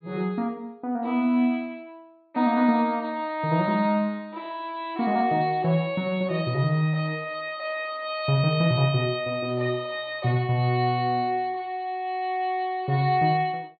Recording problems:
low-pass filter; nothing above 4.5 kHz

